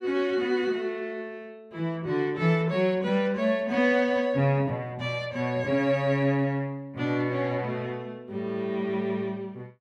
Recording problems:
none

